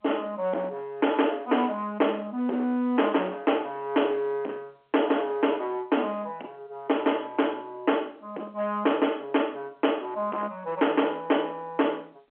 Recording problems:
telephone audio; 340 Hz to 3.3 kHz, G.711
distortion; hard clipping, uneven, signal-to-distortion ratio 7 dB

